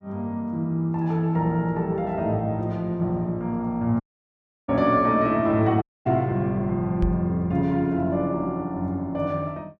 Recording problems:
dropout; at 4 s for 0.5 s and at 6 s
microphone thump; at 7 s; peak +3 dB vs average level

